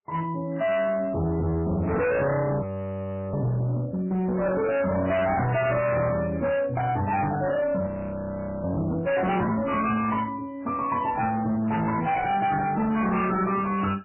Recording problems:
lossy codec; MP3, then MP3, log-spectral distance 3 dB, nothing above 2.7 kHz
distortion; hard clipping, signal-to-distortion ratio 6 dB
audio freezing; at 2.5 s for 0.5 s and at 8 s for 1 s

